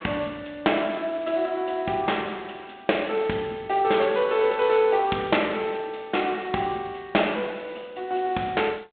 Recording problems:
phone line; 240 Hz to 3.7 kHz, G.726

